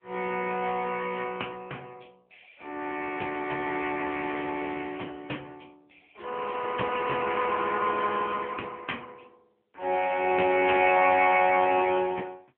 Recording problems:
telephone audio; 320 Hz to 3.1 kHz, AMR-NB

